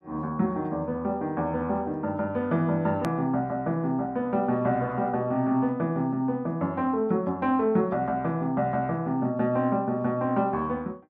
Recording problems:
click at an edit; at 3 s

